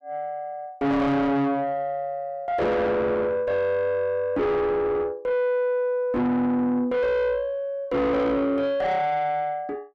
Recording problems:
distortion; soft clipping, signal-to-distortion ratio 6 dB

